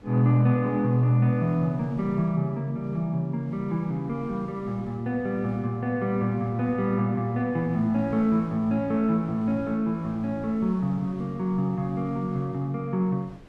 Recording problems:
wind on the microphone; below 590 Hz, SNR 24 dB

